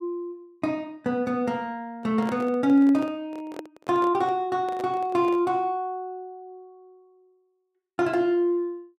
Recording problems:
microphone handling noise; from 2 to 5.5 s; peak -6 dB vs average level

